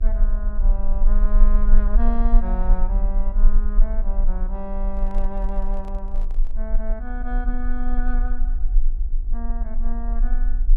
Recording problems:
hum; 50 Hz, harmonics up to 1.3 kHz, SNR 18 dB
low-frequency rumble; below 34 Hz, strongest tone 22 Hz, SNR -9 dB
handling noise; from 5 to 6.5 s; peak -9 dB vs average level

